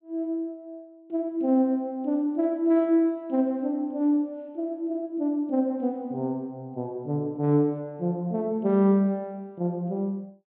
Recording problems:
low-pass filter; nothing above 4 kHz

